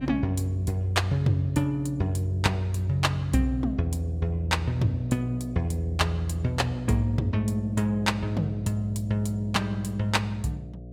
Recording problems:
hum; 60 Hz, harmonics up to 720 Hz, SNR 14 dB

